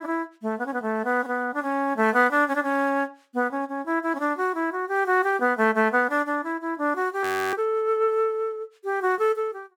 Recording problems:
frozen audio; at 7 s

